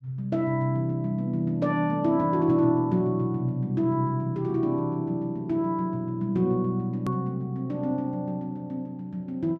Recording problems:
hard cut with a click; at 7 s

